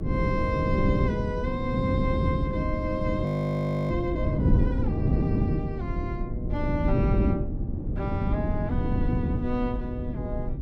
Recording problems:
low-frequency rumble; below 80 Hz, SNR 7 dB
wind noise; below 240 Hz, SNR -4 dB
audio freezing; at 3.5 s for 0.5 s

